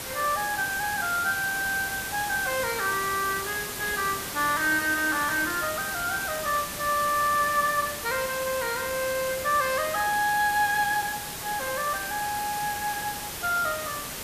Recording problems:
background hiss; slope -2 dB per octave, SNR 6 dB

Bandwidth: 14.5 kHz